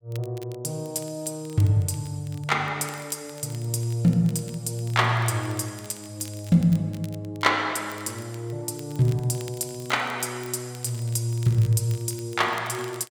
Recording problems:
crackle; vinyl, SNR 23 dB

